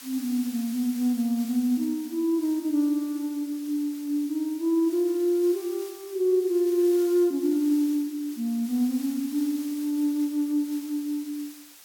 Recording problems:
background hiss; slope +2 dB per octave, SNR 18 dB

